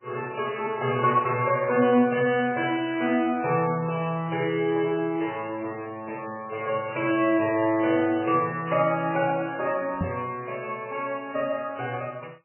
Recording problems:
lossy compression; MP3, log-spectral distance 4 dB, nothing above 2.4 kHz
microphone bump; at 10 s; peak +1 dB vs average level

